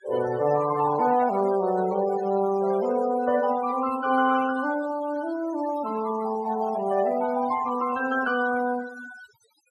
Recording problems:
denoising artefacts; signal-to-artefact ratio 14 dB

